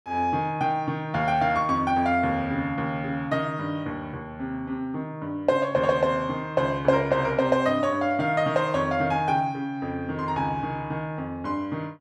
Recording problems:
none

